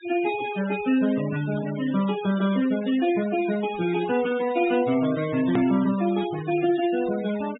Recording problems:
treble cut off; nothing above 4 kHz
denoising artefacts; signal-to-artefact ratio 15 dB
click at an edit; at 5.5 s

